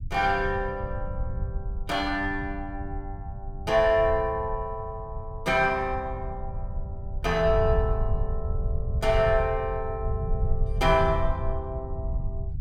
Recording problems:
rumble; below 88 Hz, SNR 6 dB

